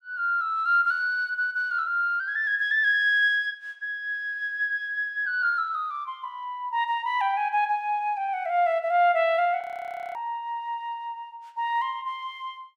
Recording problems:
audio freezing; at 9.5 s for 0.5 s

